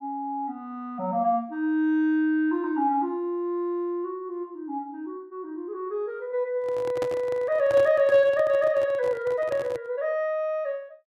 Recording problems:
handling noise; from 6.5 to 10 s; peak -3 dB vs average level

